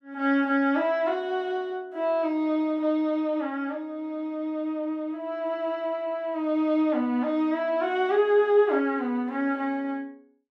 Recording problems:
none

